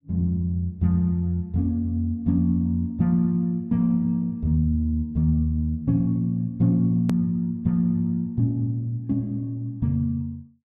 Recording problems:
edit click; at 7 s

